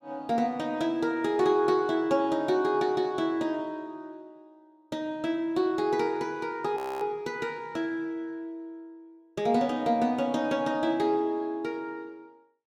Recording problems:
frozen audio; at 7 s

